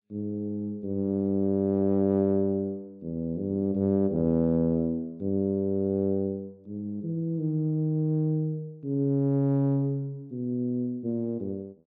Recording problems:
none

